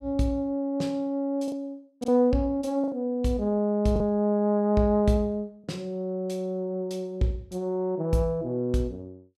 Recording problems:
packet loss; 2% of the sound replaced, filled with the last packet

